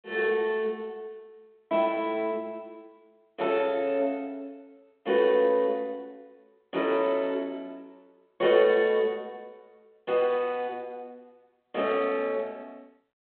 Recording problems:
phone line; 280 Hz to 3.5 kHz, G.726

